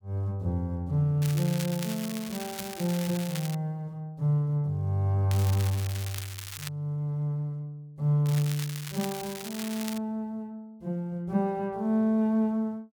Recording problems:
crackling; from 1 to 3.5 s, from 5.5 to 6.5 s and from 8.5 to 10 s; loose cable, SNR 10 dB

